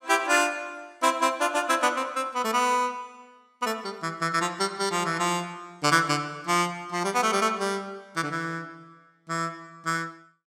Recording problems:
none

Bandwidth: 16.5 kHz